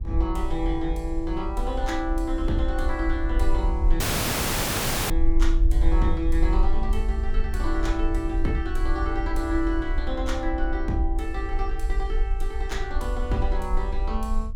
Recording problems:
low-frequency rumble; below 46 Hz, SNR 0 dB
wind noise; below 62 Hz, SNR 5 dB
dropout; at 4 s for 1 s

